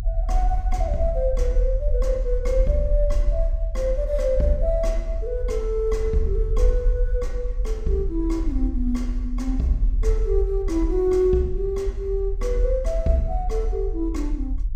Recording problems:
rumble; below 46 Hz, strongest tone 38 Hz, SNR 0 dB

